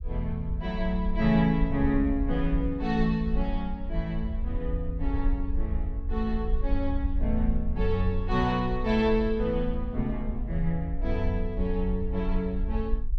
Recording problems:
low-frequency rumble; below 56 Hz, SNR 4 dB

